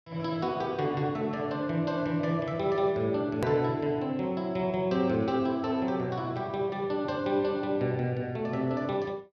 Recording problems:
hard cut with a click; at 3.5 s

